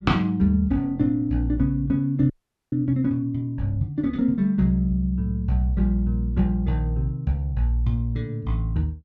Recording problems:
frozen audio; at 2.5 s

